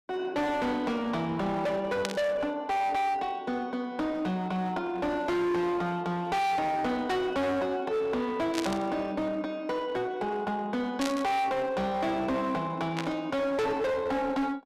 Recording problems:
distorted audio; hard clipping, uneven, signal-to-distortion ratio 6 dB
static burst; 4 times, first at 2 s; peak +1 dB vs average level

